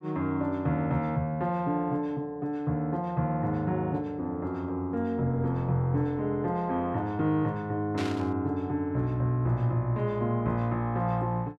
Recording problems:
burst of static; at 8 s; peak -5 dB vs average level

